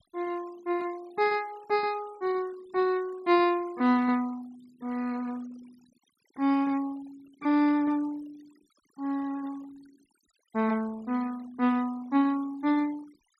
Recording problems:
denoising artefacts; signal-to-artefact ratio 24 dB

